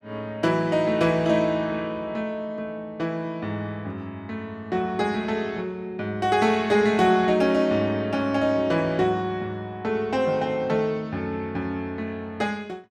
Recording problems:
none

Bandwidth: 14 kHz